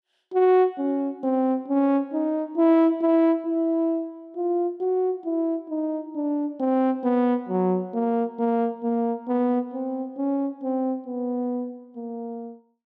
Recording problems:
none

